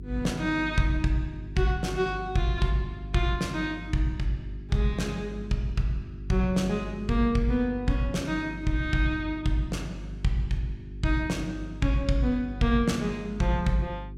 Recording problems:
electrical hum; 50 Hz, harmonics up to 400 Hz, SNR 12 dB

